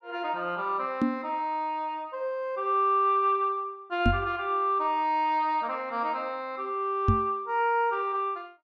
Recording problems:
microphone thump; at 1 s, at 4 s and at 7 s; peak +7 dB vs average level

